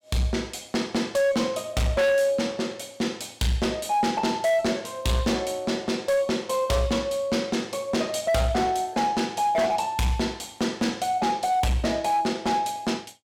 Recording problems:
distortion; hard clipping, uneven, signal-to-distortion ratio 8 dB

